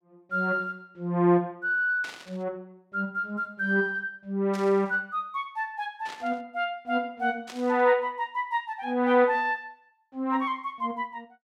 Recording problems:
static burst; 4 times, first at 2 s; peak -9 dB vs average level

